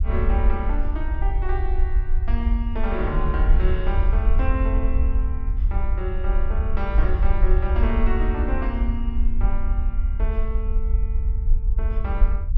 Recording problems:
rumble; below 56 Hz, SNR -7 dB

